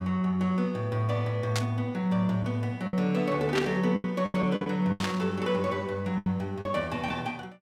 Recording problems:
lost packets; 7% of the sound replaced, filled with the last packet
static burst; at 1.5 s, at 3.5 s and at 5 s; peak +2 dB vs average level

